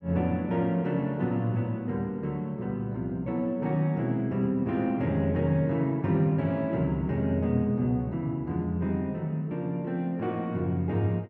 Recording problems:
none

